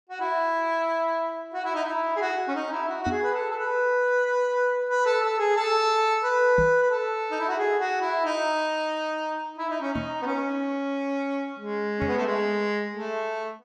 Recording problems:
microphone bump; 4 times, first at 3 s; peak -1 dB vs average level

